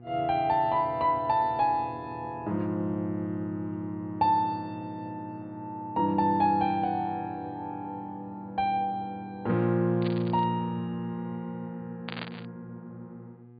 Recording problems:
treble missing; nothing above 4.7 kHz
hum; 60 Hz, harmonics up to 840 Hz, SNR 20 dB
burst of static; at 10 s and at 12 s; peak -4 dB vs average level

